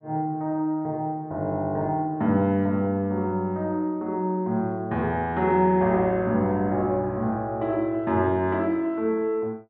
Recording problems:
none

